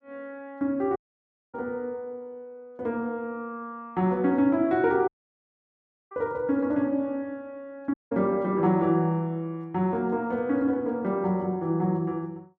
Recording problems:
dropout; at 1 s for 0.5 s, at 5 s for 1 s and at 8 s

